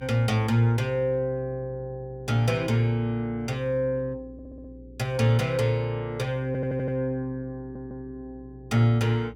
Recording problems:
electrical hum; 60 Hz, harmonics up to 420 Hz, SNR 22 dB
audio stuttering; at 4.5 s, at 6.5 s and at 7.5 s

